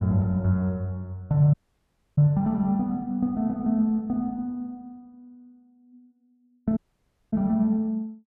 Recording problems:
audio cutting out; at 1.5 s for 0.5 s and at 7 s for 0.5 s

